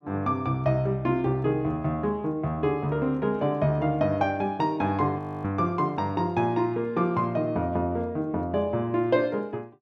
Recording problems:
frozen audio; at 5 s

